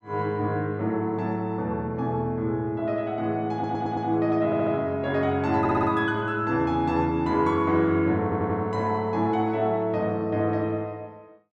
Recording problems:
stutter; 4 times, first at 3.5 s

